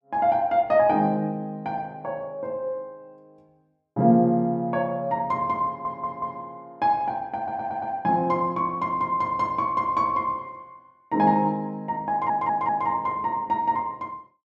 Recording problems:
stutter; at 5.5 s, at 7.5 s and at 12 s

